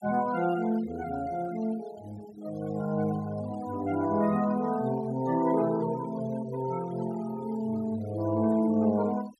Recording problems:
noise reduction artefacts; signal-to-artefact ratio 20 dB

